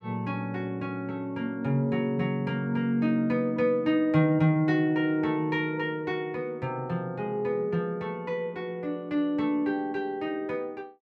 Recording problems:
none

